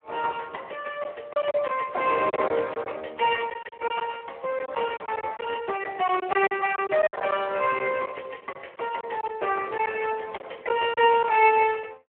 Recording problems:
phone line; 340 Hz to 3.1 kHz, Speex
packet loss; 8% of the sound replaced, filled with silence

